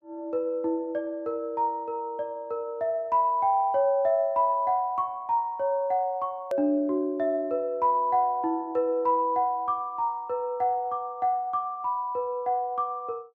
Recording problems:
edit click; at 6.5 s

